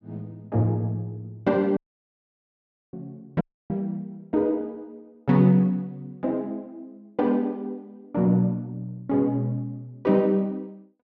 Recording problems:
audio cutting out; at 2 s for 1 s and at 3.5 s

